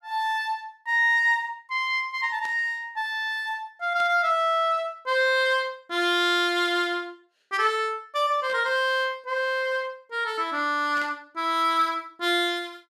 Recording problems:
static burst; 4 times, first at 2.5 s; peak -13 dB vs average level

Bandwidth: 13.5 kHz